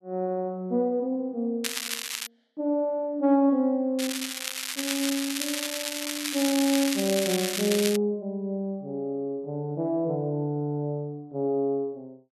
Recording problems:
crackle; at 1.5 s and from 4 to 8 s; loose cable, SNR 2 dB

